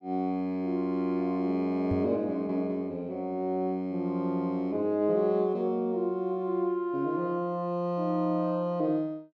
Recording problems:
microphone bump; at 2 s; peak 0 dB vs average level

